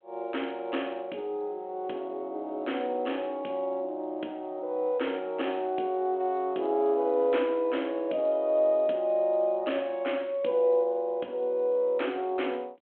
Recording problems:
phone line; 240 Hz to 3.4 kHz, G.726

